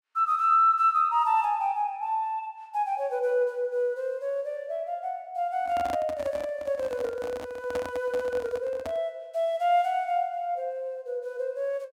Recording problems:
handling noise; from 5.5 to 9 s; peak -4 dB vs average level

